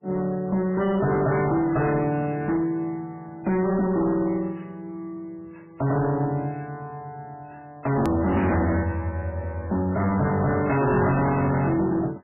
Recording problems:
lossy compression; MP3, log-spectral distance 3 dB, nothing above 13.1 kHz
distortion; hard clipping, signal-to-distortion ratio 7 dB
click at an edit; at 8 s

